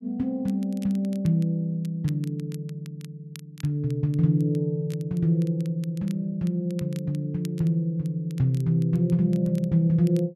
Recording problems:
crackling; vinyl, SNR 27 dB

